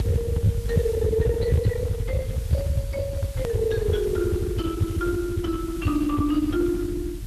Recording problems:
codec artefacts; Speex, log-spectral distance 2 dB, nothing above 13.3 kHz
distortion; soft clipping, signal-to-distortion ratio 11 dB
background hiss; slope +1 dB per octave, SNR 19 dB
rumble; below 130 Hz, SNR 2 dB
click at an edit; at 3.5 s

